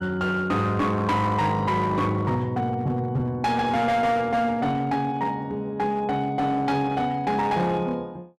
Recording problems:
distortion; hard clipping, uneven, signal-to-distortion ratio 11 dB

